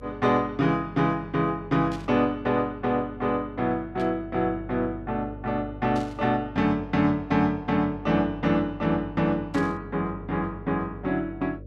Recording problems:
electrical hum; 50 Hz, harmonics up to 600 Hz, SNR 17 dB
burst of static; 4 times, first at 2 s; peak -13 dB vs average level

